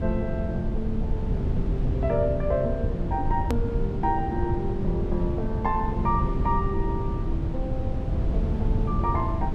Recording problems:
low-frequency rumble; below 130 Hz, SNR -1 dB
hard cut with a click; at 3.5 s

